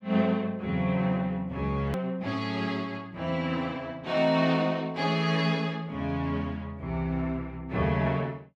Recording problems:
edit click; at 2 s

